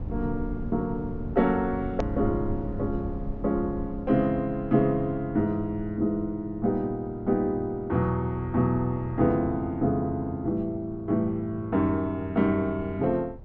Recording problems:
treble missing; nothing above 6.8 kHz
rumble; below 130 Hz, SNR 13 dB
edit click; at 2 s

